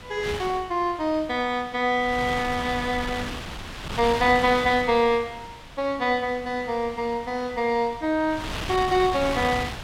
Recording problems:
wind on the microphone; below 3 kHz, SNR 11 dB

